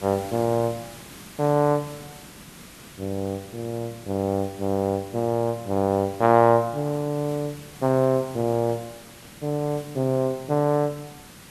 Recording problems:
hiss; slope -2 dB per octave, SNR 19 dB

